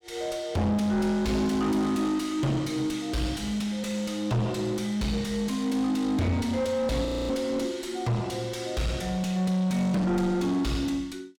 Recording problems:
distortion; soft clipping, signal-to-distortion ratio 6 dB
frozen audio; at 7 s

